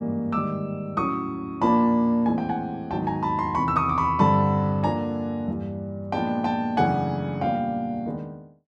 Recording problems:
none

